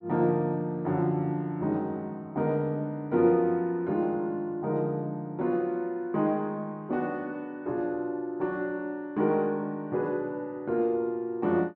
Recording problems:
none

